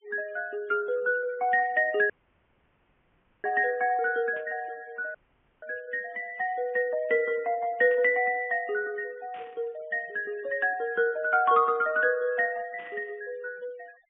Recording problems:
low-pass filter; nothing above 3.2 kHz
noise reduction artefacts; signal-to-artefact ratio 28 dB
audio cutting out; at 2 s for 1.5 s and at 5 s
burst of static; 4 times, first at 4.5 s; peak -18 dB vs average level

